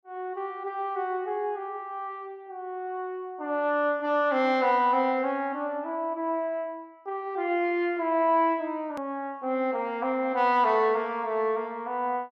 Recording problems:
edit click; at 9 s

